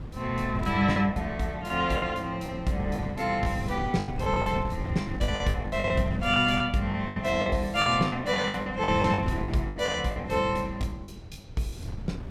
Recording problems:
wind on the microphone; below 190 Hz, SNR 10 dB
packet loss; 14% of the sound replaced, filled with the last packet

